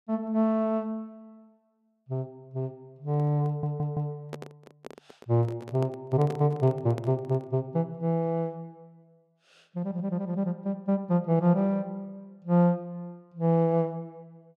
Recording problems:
handling noise; from 3 to 7.5 s; peak -6 dB vs average level
stutter; at 3.5 s

